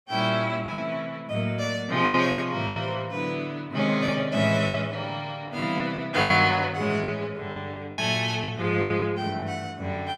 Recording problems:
lost packets; 8% of the sound replaced, filled with the last packet

